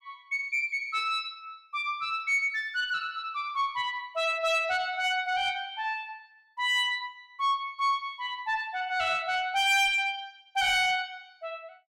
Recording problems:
distorted audio; soft clipping, signal-to-distortion ratio 12 dB

